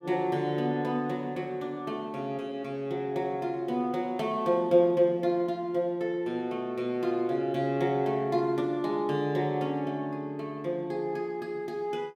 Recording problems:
none

